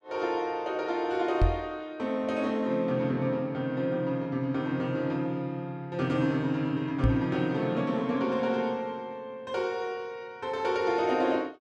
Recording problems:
knock on the microphone; at 1.5 s and at 7 s; peak +8 dB vs average level

